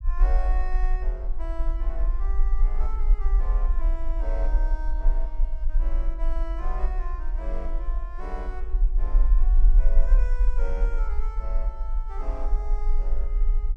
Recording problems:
rumble; below 40 Hz, SNR -13 dB

